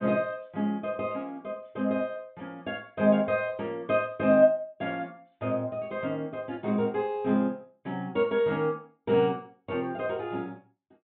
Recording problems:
treble cut off; nothing above 4 kHz

